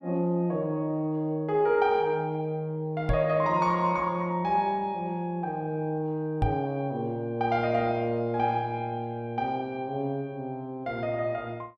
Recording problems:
microphone bump; at 3 s and at 6.5 s; peak +4 dB vs average level

